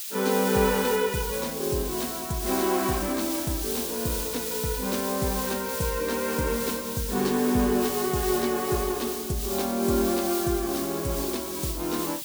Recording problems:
hiss; SNR 4 dB

